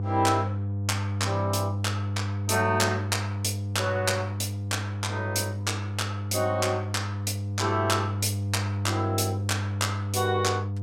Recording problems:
electrical hum; 50 Hz, harmonics up to 500 Hz, SNR 2 dB

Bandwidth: 16 kHz